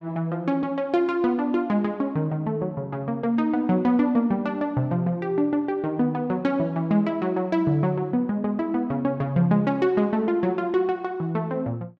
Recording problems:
none

